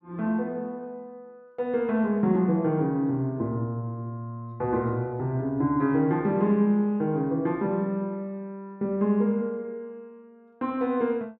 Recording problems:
none

